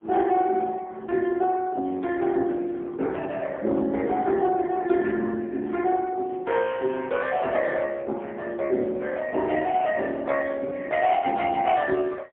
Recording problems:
phone line; 240 Hz to 3.6 kHz, AMR-NB, then MP3

